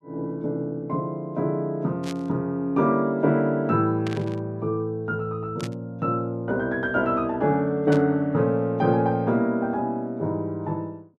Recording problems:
burst of static; 4 times, first at 2 s; peak -7 dB vs average level

